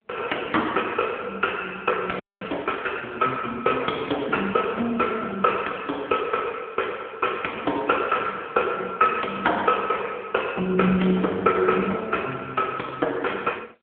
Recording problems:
phone line; 260 Hz to 3.7 kHz, AMR-NB
frozen audio; at 2 s

